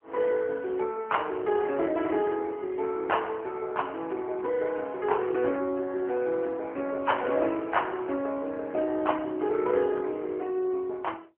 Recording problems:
telephone audio; 280 Hz to 3 kHz, AMR-NB

